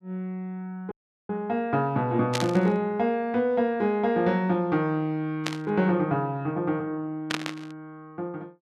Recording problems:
dropout; at 1 s
static burst; at 2.5 s, at 5.5 s and at 7.5 s; peak +2 dB vs average level

